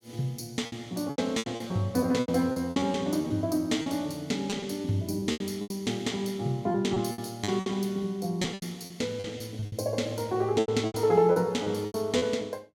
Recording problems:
lost packets; 13% of the sound replaced, filled with repeated pitch periods

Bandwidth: 17.5 kHz